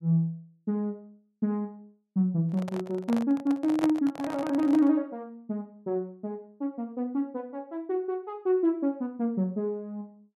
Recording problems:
microphone handling noise; from 2.5 to 5 s; peak +1 dB vs average level

